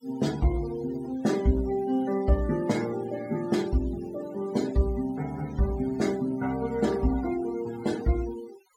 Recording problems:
noise reduction artefacts; signal-to-artefact ratio 17 dB

